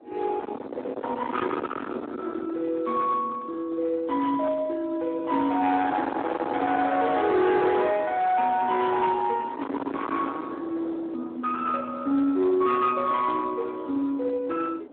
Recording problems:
telephone audio; 240 Hz to 3.8 kHz, Speex
distortion; hard clipping, signal-to-distortion ratio 7 dB
wind noise; below 1.1 kHz, SNR 9 dB

